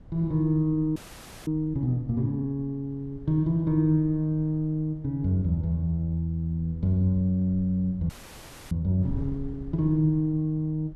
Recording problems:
wind noise; below 96 Hz, SNR 20 dB
audio freezing; at 1 s for 0.5 s and at 8 s for 0.5 s

